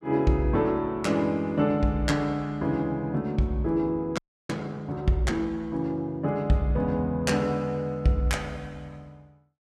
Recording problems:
audio freezing; at 4 s

